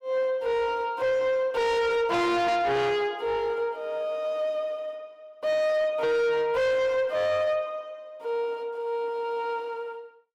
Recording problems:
distortion; soft clipping, signal-to-distortion ratio 8 dB

